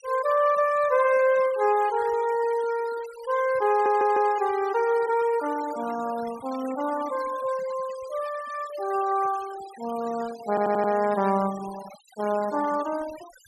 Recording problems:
denoising artefacts; signal-to-artefact ratio 18 dB
audio stuttering; at 3.5 s and at 10 s

